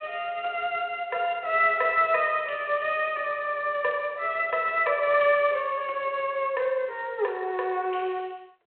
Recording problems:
telephone audio; 320 Hz to 3.3 kHz, G.726

